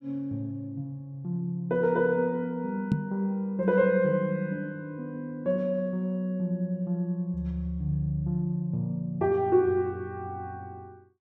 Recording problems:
microphone thump; at 3 s; peak +6 dB vs average level

